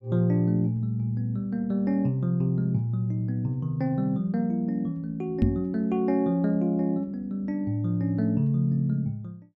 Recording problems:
microphone thump; at 5.5 s; peak +7 dB vs average level

